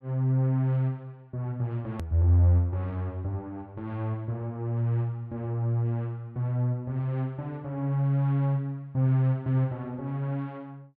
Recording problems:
hard cut with a click; at 2 s

